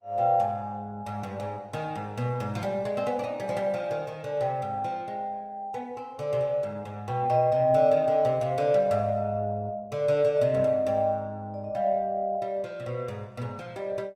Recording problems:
codec artefacts; Opus, log-spectral distance 2 dB

